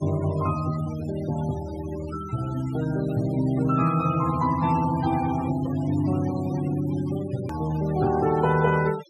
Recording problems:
denoising artefacts; signal-to-artefact ratio 16 dB
click at an edit; at 7.5 s

